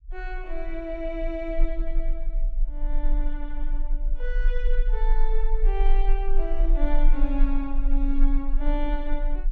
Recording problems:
low-frequency rumble; below 32 Hz, strongest tone 20 Hz, SNR -6 dB

